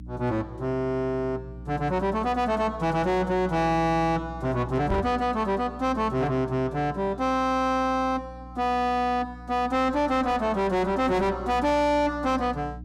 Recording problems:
distorted audio; soft clipping, signal-to-distortion ratio 6 dB
mains hum; 60 Hz, harmonics up to 300 Hz, SNR 16 dB
microphone thump; at 5 s; peak +1 dB vs average level

